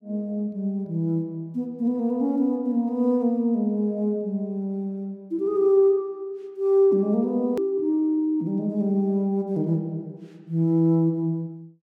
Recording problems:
edit click; at 7.5 s

